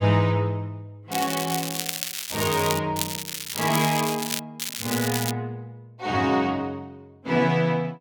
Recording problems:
crackle; from 1 to 3 s, from 3 to 4.5 s and at 4.5 s; loose cable, SNR 4 dB

